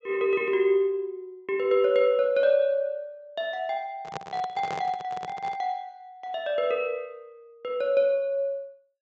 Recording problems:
treble missing; nothing above 8 kHz
handling noise; from 4 to 5.5 s; peak -5 dB vs average level

